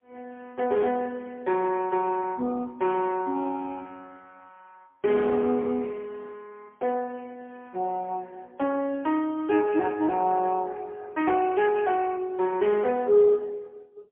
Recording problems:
phone line; 220 Hz to 2.5 kHz, AMR-NB, then MP3

